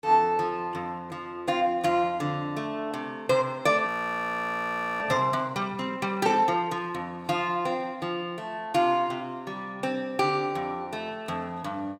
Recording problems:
frozen audio; at 4 s for 1 s

